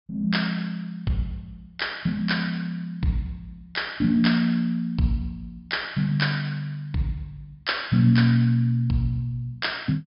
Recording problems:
treble cut off; nothing above 5.5 kHz

